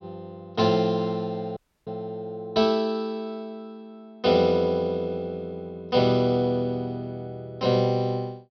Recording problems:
treble missing; nothing above 6 kHz
dropout; at 1.5 s

